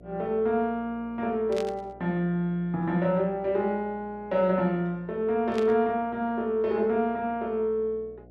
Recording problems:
electrical hum; 60 Hz, harmonics up to 720 Hz, SNR 25 dB
burst of static; at 1.5 s and at 5.5 s; peak -7 dB vs average level

